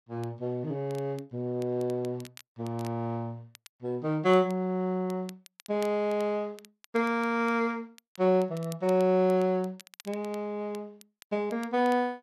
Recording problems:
crackling; vinyl, SNR 24 dB

